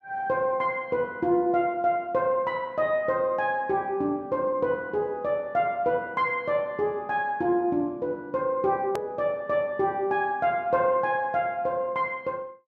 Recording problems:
click at an edit; at 9 s

